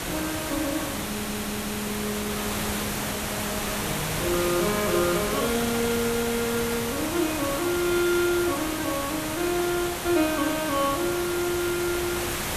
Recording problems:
hiss; slope -3 dB per octave, SNR 2 dB
stutter; at 1 s

